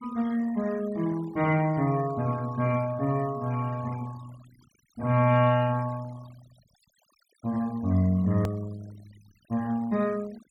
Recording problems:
noise reduction artefacts; signal-to-artefact ratio 23 dB
edit click; at 8.5 s

